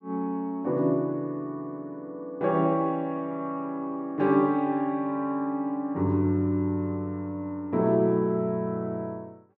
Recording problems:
none

